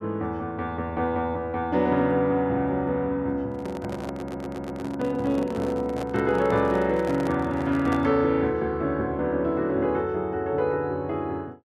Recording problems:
handling noise; from 3.5 to 8 s; peak -4 dB vs average level
audio stuttering; at 4 s

